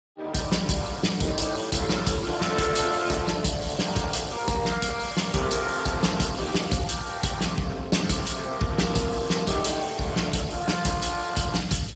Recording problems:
lossy compression; Speex, log-spectral distance 6 dB, nothing above 7.6 kHz

